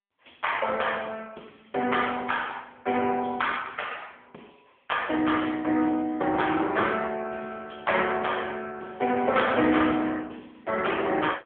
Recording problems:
telephone audio; 260 Hz to 3.4 kHz, AMR-NB

